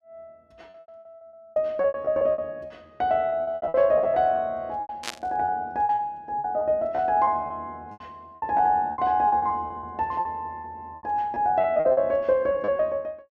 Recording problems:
packet loss; 16% of the sound replaced, filled with repeated pitch periods
static burst; at 5 s; peak -1 dB vs average level

